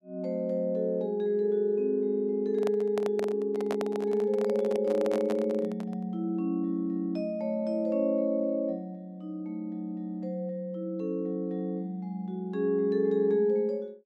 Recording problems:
microphone handling noise; from 2.5 to 6 s; peak -2 dB vs average level

